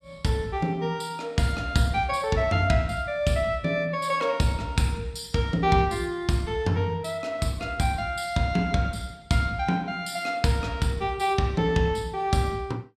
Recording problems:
none

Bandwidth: 14 kHz